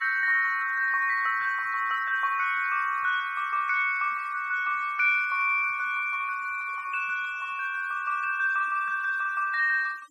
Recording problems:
noise reduction artefacts; signal-to-artefact ratio 27 dB

